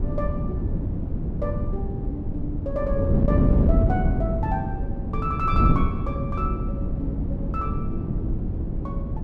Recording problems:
wind on the microphone; below 200 Hz, SNR -6 dB

